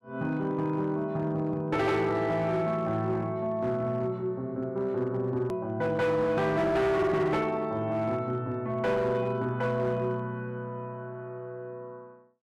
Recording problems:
distorted audio; hard clipping, signal-to-distortion ratio 12 dB
hard cut with a click; at 5.5 s

